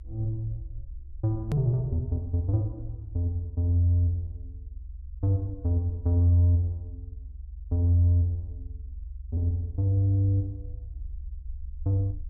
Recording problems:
rumble; below 70 Hz, SNR 15 dB
edit click; at 1.5 s

